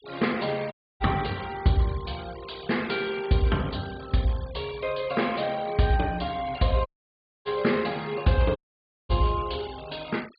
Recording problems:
treble missing; nothing above 4.7 kHz
denoising artefacts; signal-to-artefact ratio 20 dB
dropout; at 0.5 s, at 7 s for 0.5 s and at 8.5 s for 0.5 s

